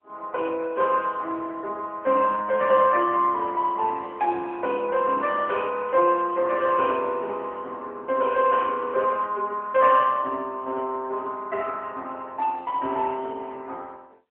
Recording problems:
phone line; 300 Hz to 3 kHz, AMR-NB

